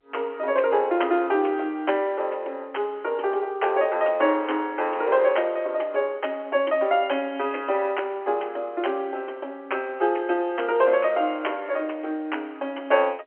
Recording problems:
telephone audio; 280 Hz to 3.2 kHz, G.711

